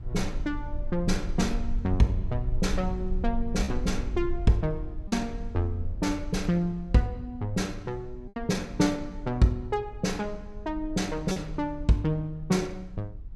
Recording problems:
low-frequency rumble; below 52 Hz, strongest tone 20 Hz, SNR 9 dB
lost packets; 1.5% of the sound replaced, filled with repeated pitch periods

